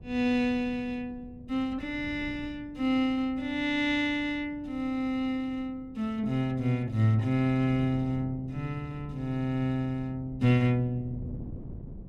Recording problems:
wind on the microphone; below 200 Hz, SNR 17 dB

